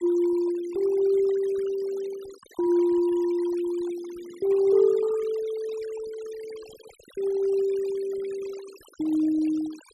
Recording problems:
denoising artefacts; signal-to-artefact ratio 22 dB

